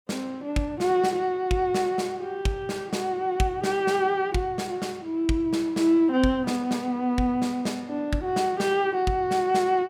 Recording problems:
none

